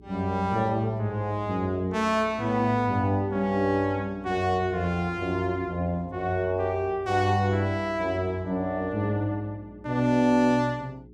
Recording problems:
hum; 60 Hz, harmonics up to 420 Hz, SNR 23 dB

